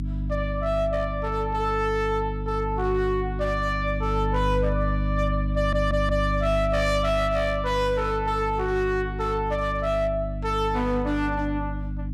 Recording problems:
distorted audio; hard clipping, uneven, signal-to-distortion ratio 10 dB
hum; 50 Hz, harmonics up to 300 Hz, SNR 4 dB
stutter; at 5.5 s

